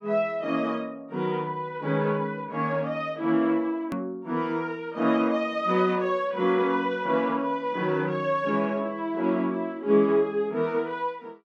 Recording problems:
click at an edit; at 4 s

